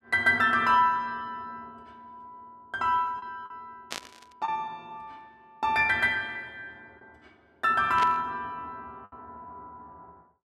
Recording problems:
packet loss; 2% of the sound replaced, filled with the last packet
burst of static; at 4 s and at 8 s; peak -3 dB vs average level

